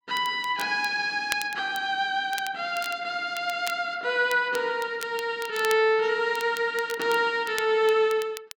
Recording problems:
crackling; vinyl, SNR 15 dB

